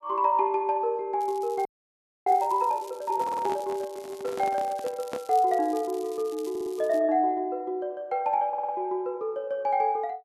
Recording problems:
crackling; from 1 to 7 s; loose cable, SNR 23 dB
frozen audio; at 1.5 s for 0.5 s
handling noise; from 3 to 5 s; peak -5 dB vs average level
stutter; at 3 s, at 6.5 s and at 8.5 s

